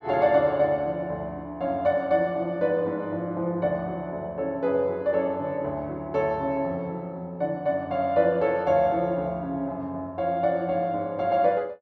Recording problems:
none

